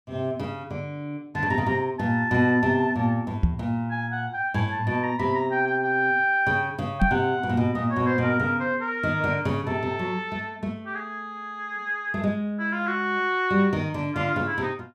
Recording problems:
microphone thump; at 3.5 s and at 7 s; peak +8 dB vs average level

